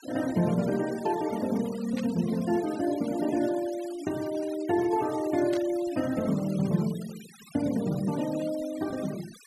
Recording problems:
denoising artefacts; signal-to-artefact ratio 17 dB
burst of static; at 2 s and at 5.5 s; peak -11 dB vs average level

